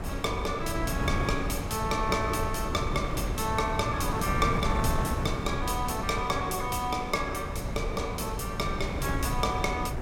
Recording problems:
wind noise; below 270 Hz, SNR 3 dB

